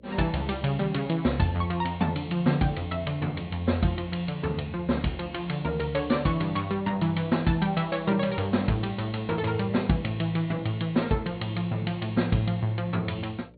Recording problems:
treble cut off; nothing above 4.4 kHz
hum; 60 Hz, harmonics up to 600 Hz, SNR 26 dB

